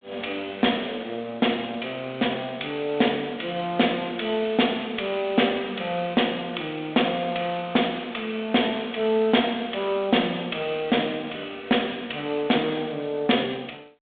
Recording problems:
telephone audio; 260 Hz to 3.7 kHz, G.726

